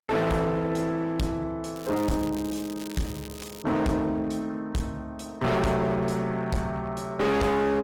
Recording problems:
codec artefacts; Opus, log-spectral distance 3 dB, nothing above 17.7 kHz
distorted audio; hard clipping, uneven, signal-to-distortion ratio 5 dB
crackle; from 2 to 3.5 s; loose cable, SNR 17 dB

